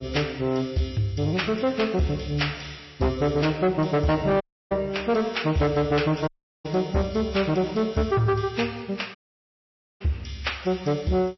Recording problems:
codec artefacts; MP3, log-spectral distance 5 dB, nothing above 5.7 kHz
distortion; soft clipping, signal-to-distortion ratio 10 dB
audio cutting out; at 4.5 s, at 6.5 s and at 9 s for 1 s

